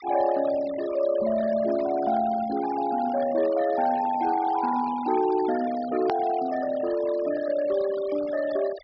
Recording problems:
treble missing; nothing above 5.5 kHz
noise reduction artefacts; signal-to-artefact ratio 17 dB
click at an edit; at 6 s

